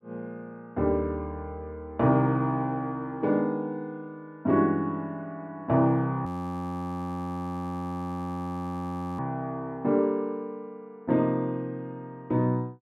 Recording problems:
frozen audio; at 6.5 s for 3 s

